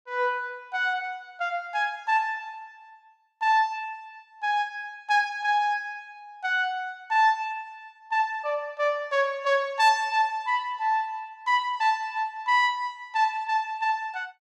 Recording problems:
none

